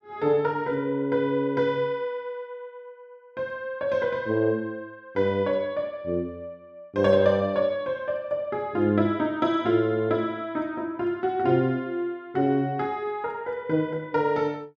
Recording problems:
none

